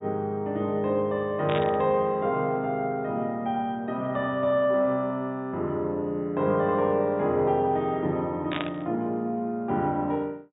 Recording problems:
treble missing; nothing above 4 kHz
static burst; at 1.5 s and at 8.5 s; peak -2 dB vs average level

